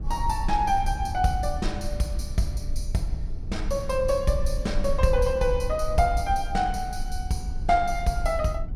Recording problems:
rumble; below 58 Hz, strongest tone 20 Hz, SNR 6 dB

